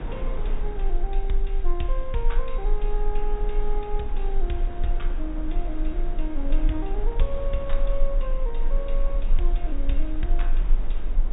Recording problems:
low-pass filter; nothing above 4 kHz
low-frequency rumble; below 30 Hz, strongest tone 22 Hz, SNR -5 dB
wind noise; below 480 Hz, SNR 6 dB

